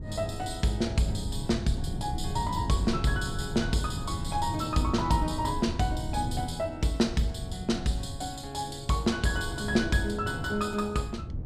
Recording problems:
wind on the microphone; below 160 Hz, SNR 7 dB

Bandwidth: 14.5 kHz